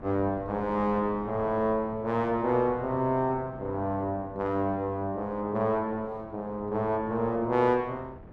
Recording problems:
wind noise; below 440 Hz, SNR 19 dB

